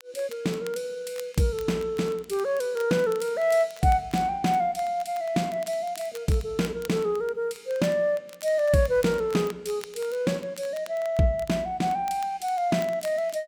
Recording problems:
crackling; vinyl, SNR 21 dB

